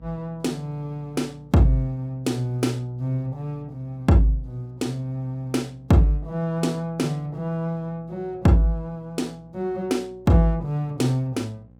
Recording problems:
hum; 60 Hz, harmonics up to 840 Hz, SNR 26 dB

